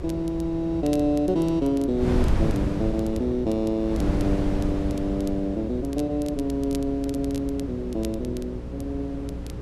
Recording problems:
hum; 60 Hz, harmonics up to 540 Hz, SNR 11 dB
wind noise; below 230 Hz, SNR 6 dB
crackle; vinyl, SNR 22 dB

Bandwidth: 12.5 kHz